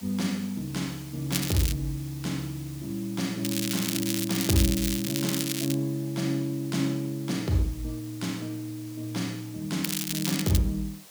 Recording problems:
hiss; slope -1 dB per octave, SNR 17 dB
crackling; at 1.5 s, from 3.5 to 5.5 s and at 10 s; loose cable, SNR 1 dB

